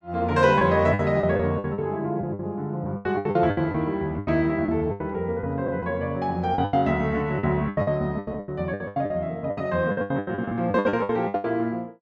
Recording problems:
lost packets; 18% of the sound replaced, filled with the last packet

